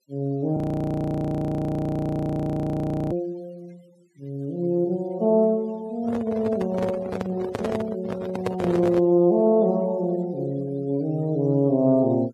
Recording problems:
noise reduction artefacts; signal-to-artefact ratio 25 dB
audio freezing; at 0.5 s for 2.5 s
microphone handling noise; from 6 to 9 s; peak 0 dB vs average level

